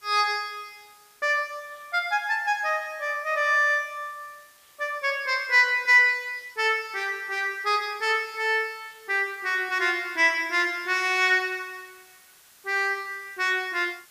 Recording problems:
background hiss; slope +1 dB per octave, SNR 29 dB

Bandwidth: 15 kHz